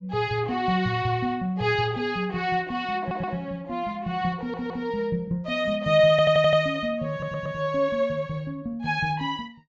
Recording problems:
treble cut off; nothing above 8 kHz
audio stuttering; 4 times, first at 3 s

